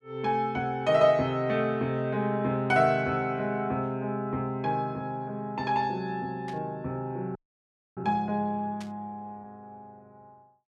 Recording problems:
static burst; at 6.5 s and at 9 s; peak -12 dB vs average level
frozen audio; at 7.5 s for 0.5 s

